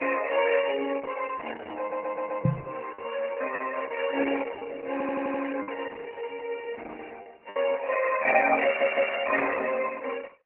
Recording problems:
codec artefacts; MP3, then Opus, log-spectral distance 6 dB, nothing above 2.6 kHz
lost packets; 3% of the sound replaced, filled with the last packet
audio stuttering; at 2 s, at 5 s and at 8.5 s
microphone bump; at 2.5 s; peak +6 dB vs average level

